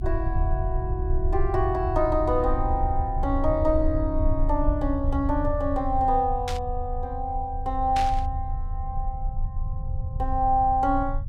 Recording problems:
rumble; below 78 Hz, strongest tone 28 Hz, SNR 4 dB
burst of static; at 6.5 s and at 8 s; peak -3 dB vs average level

